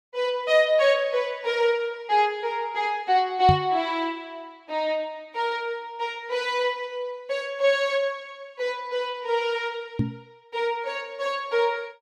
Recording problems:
knock on the microphone; at 3.5 s and at 10 s; peak +5 dB vs average level

